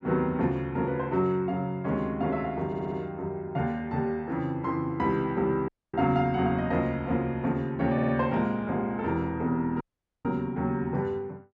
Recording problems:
stutter; at 2.5 s and at 8 s
audio cutting out; at 5.5 s and at 10 s

